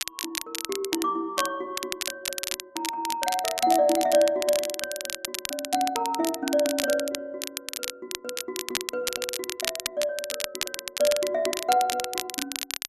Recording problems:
crackle; vinyl, SNR 4 dB

